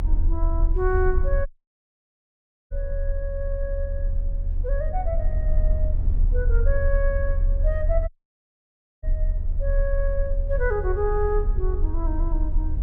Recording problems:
low-frequency rumble; below 50 Hz, strongest tone 32 Hz, SNR -4 dB
audio cutting out; at 1.5 s for 1 s and at 8 s for 1 s

